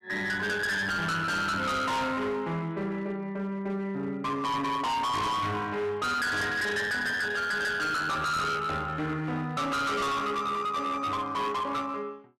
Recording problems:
distortion; hard clipping, uneven, signal-to-distortion ratio 6 dB

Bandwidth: 13 kHz